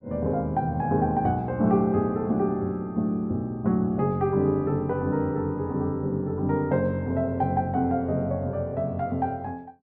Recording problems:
none

